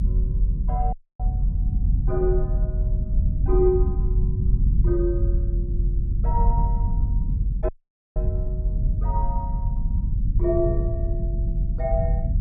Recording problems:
rumble; below 80 Hz, strongest tone 44 Hz, SNR -4 dB
dropout; at 1 s and at 7.5 s

